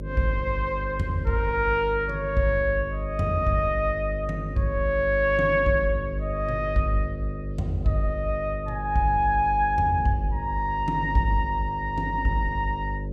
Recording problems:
electrical hum; 50 Hz, harmonics up to 600 Hz, SNR 8 dB

